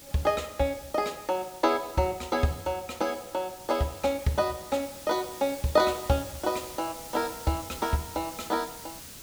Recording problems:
background hiss; SNR 14 dB

